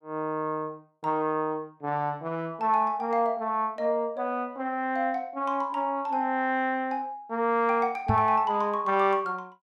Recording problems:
microphone thump; at 8 s; peak +4 dB vs average level

